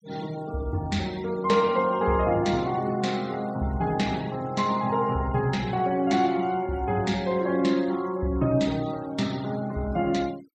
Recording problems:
noise reduction artefacts; signal-to-artefact ratio 21 dB

